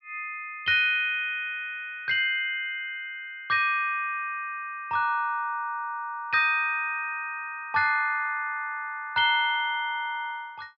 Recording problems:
treble cut off; nothing above 5.5 kHz

